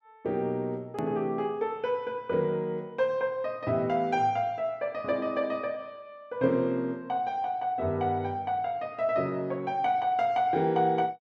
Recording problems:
edit click; at 1 s

